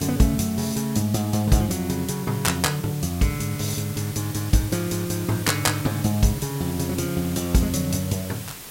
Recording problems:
background hiss; slope -1 dB per octave, SNR 12 dB

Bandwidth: 16 kHz